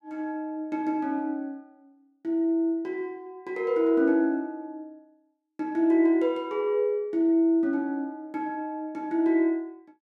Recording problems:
none

